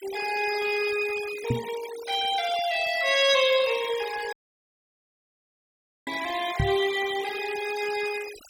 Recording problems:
denoising artefacts; signal-to-artefact ratio 14 dB
knock on the microphone; at 1.5 s and at 6.5 s; peak +3 dB vs average level
dropout; at 4.5 s for 1.5 s

